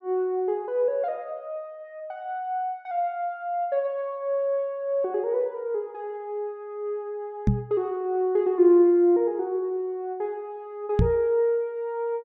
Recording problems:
microphone thump; at 7.5 s and at 11 s; peak +8 dB vs average level

